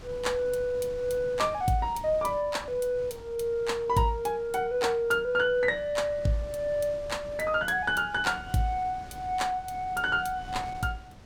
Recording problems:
wind noise; below 480 Hz, SNR 19 dB

